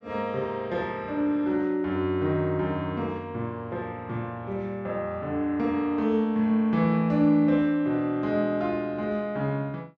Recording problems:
none

